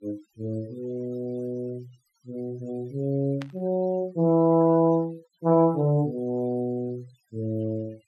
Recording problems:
denoising artefacts; signal-to-artefact ratio 27 dB
burst of static; at 3.5 s; peak -10 dB vs average level

